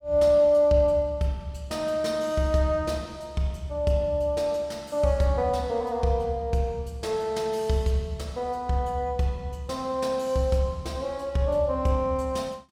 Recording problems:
none

